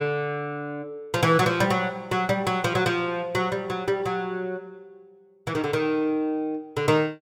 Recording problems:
none

